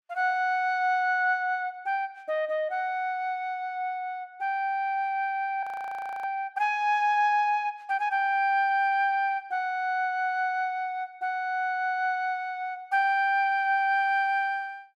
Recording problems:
audio freezing; at 5.5 s for 0.5 s

